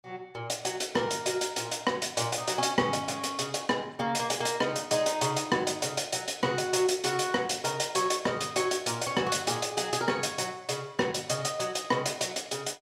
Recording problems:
none

